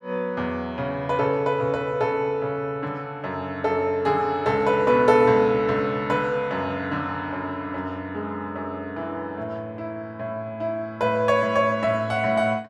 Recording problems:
none

